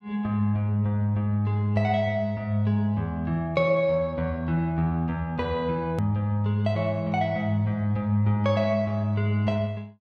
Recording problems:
edit click; at 6 s

